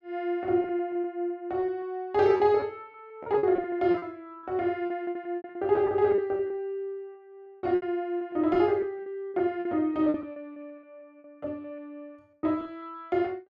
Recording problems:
packet loss; 13% of the sound replaced, filled with repeated pitch periods

